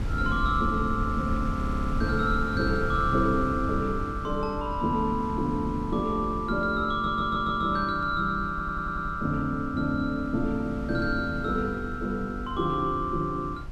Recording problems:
wind noise; below 130 Hz, SNR 8 dB
audio stuttering; at 1.5 s, at 7 s and at 8.5 s

